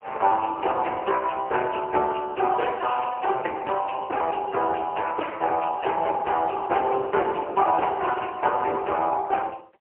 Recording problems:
telephone audio; 320 Hz to 3.1 kHz, AMR-NB, then MP3

